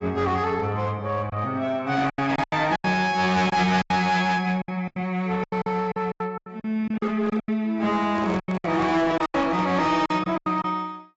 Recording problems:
codec artefacts; AAC, log-spectral distance 2 dB, nothing above 7.6 kHz
distorted audio; hard clipping, uneven, signal-to-distortion ratio 10 dB
lost packets; 13% of the sound replaced, filled with silence
microphone handling noise; from 8 to 10 s; peak -5 dB vs average level

